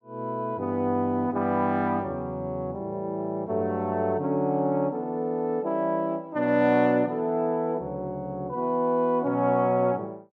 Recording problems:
none

